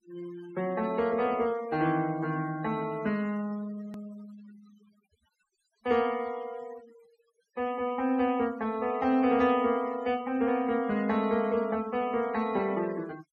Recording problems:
denoising artefacts; signal-to-artefact ratio 20 dB
edit click; at 4 s

